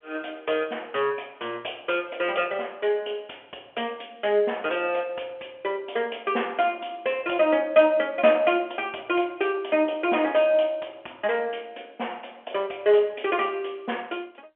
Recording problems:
telephone audio; 320 Hz to 3.3 kHz, G.711

